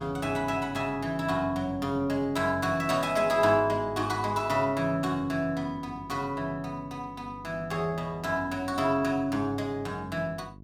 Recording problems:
electrical hum; 50 Hz, harmonics up to 650 Hz, SNR 19 dB

